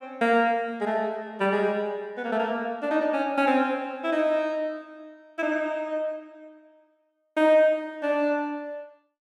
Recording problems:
none

